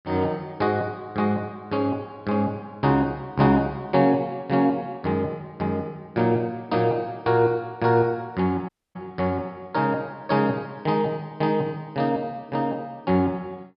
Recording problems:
treble missing; nothing above 5.5 kHz
audio cutting out; at 8.5 s

